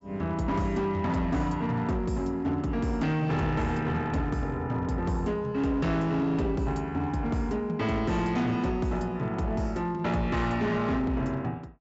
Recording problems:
treble cut off; nothing above 8 kHz
distorted audio; hard clipping, uneven, signal-to-distortion ratio 12 dB

